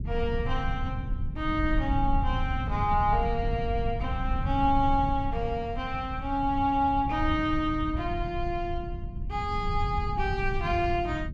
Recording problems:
low-frequency rumble; below 100 Hz, SNR 4 dB

